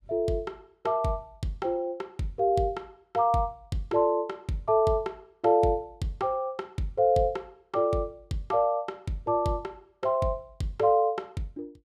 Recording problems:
none

